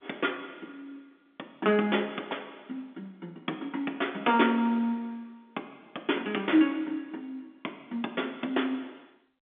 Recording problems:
telephone audio; 220 Hz to 3.6 kHz, G.711

